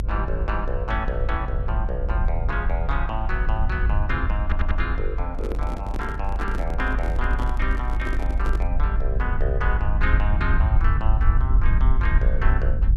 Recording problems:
rumble; below 60 Hz, strongest tone 22 Hz, SNR -5 dB
stutter; at 4.5 s
microphone handling noise; from 5.5 to 8.5 s; peak 0 dB vs average level

